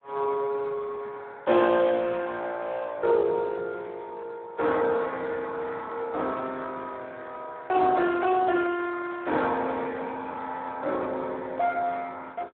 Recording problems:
phone line; 300 Hz to 3.7 kHz, Speex

